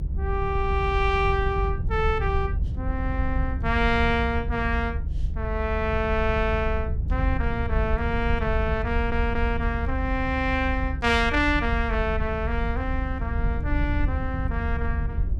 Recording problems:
low-frequency rumble; below 76 Hz, SNR 2 dB
audio stuttering; at 9 s

